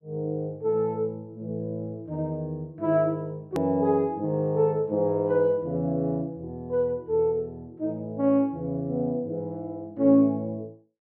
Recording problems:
click at an edit; at 3.5 s

